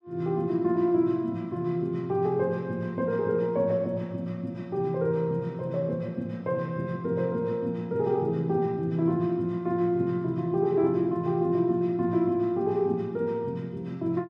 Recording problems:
none

